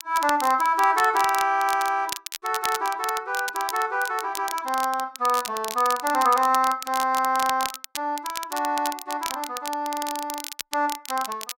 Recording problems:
crackling; vinyl, SNR 10 dB

